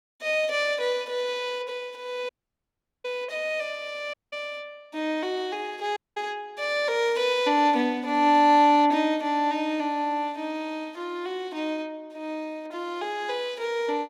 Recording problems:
dropout; at 2.5 s for 1 s, at 4 s and at 6 s

